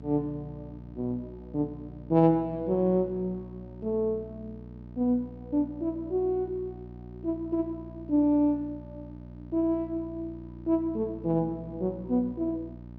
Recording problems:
hum; 60 Hz, harmonics up to 660 Hz, SNR 15 dB

